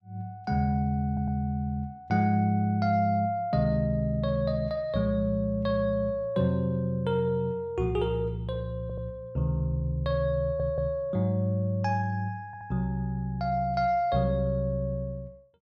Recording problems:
stutter; 4 times, first at 1 s

